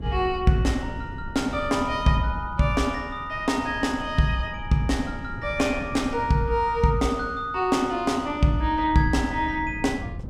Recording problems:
wind noise; below 170 Hz, SNR 14 dB

